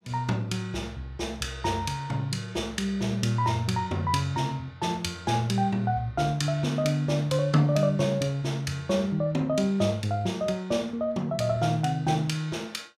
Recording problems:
none

